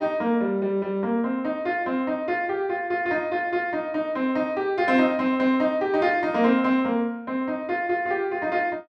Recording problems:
none

